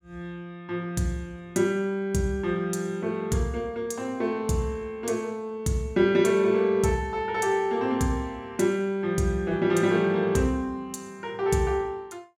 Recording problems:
none

